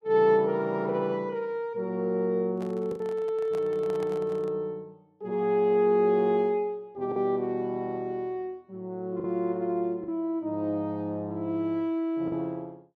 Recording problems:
packet loss; 1.9% of the sound replaced, filled with the last packet
handling noise; from 2.5 to 4.5 s; peak -10 dB vs average level

